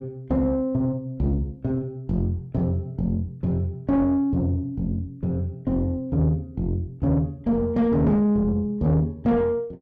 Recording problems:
distorted audio; soft clipping, signal-to-distortion ratio 10 dB

